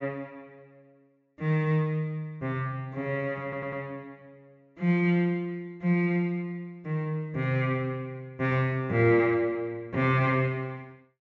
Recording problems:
low-pass filter; nothing above 8 kHz
stutter; at 3.5 s

